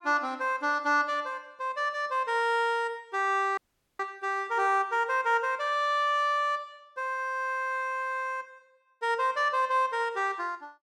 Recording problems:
audio cutting out; at 3.5 s

